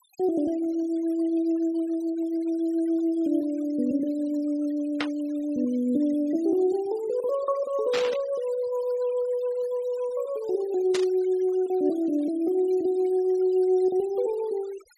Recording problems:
denoising artefacts; signal-to-artefact ratio 25 dB
burst of static; at 5 s, at 8 s and at 11 s; peak +1 dB vs average level

